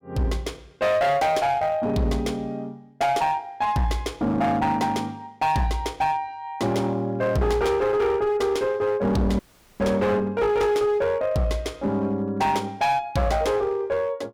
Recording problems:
distorted audio; hard clipping, uneven, signal-to-distortion ratio 10 dB
dropout; at 9.5 s

